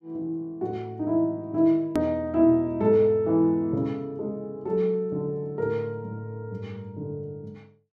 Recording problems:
hard cut with a click; at 2 s

